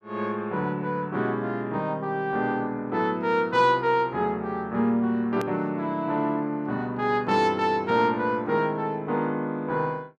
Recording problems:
hard cut with a click; at 5.5 s

